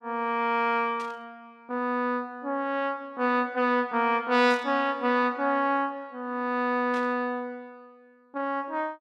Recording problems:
static burst; at 1 s, at 4.5 s and at 7 s; peak -12 dB vs average level

